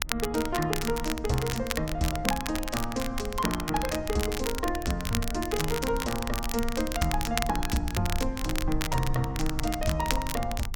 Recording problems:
rumble; below 58 Hz, SNR 8 dB
crackle; vinyl, SNR 5 dB

